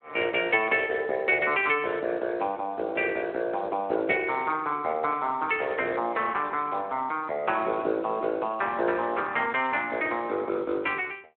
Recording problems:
phone line; 240 Hz to 3.7 kHz, Speex

